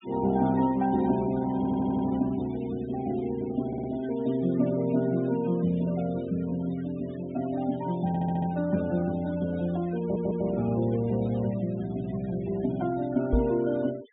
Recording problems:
treble missing; nothing above 4 kHz
noise reduction artefacts; signal-to-artefact ratio 21 dB
audio stuttering; 4 times, first at 1.5 s
microphone thump; at 13 s; peak +6 dB vs average level

